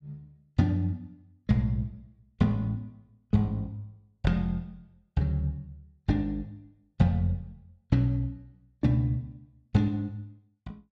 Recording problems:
none

